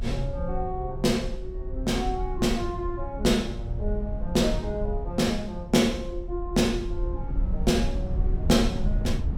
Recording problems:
rumble; below 70 Hz, SNR 5 dB

